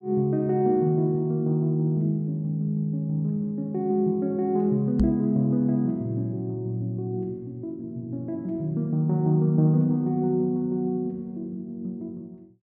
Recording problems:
microphone thump; at 5 s; peak +5 dB vs average level

